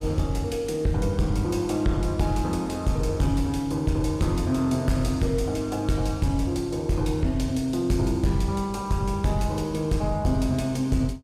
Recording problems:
distorted audio; soft clipping, signal-to-distortion ratio 12 dB

